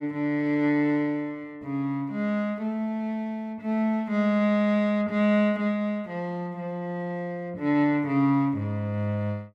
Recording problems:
none

